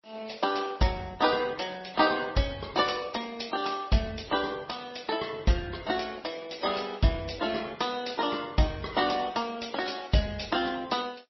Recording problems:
lossy compression; Opus, then MP3, log-spectral distance 8 dB, nothing above 5.7 kHz

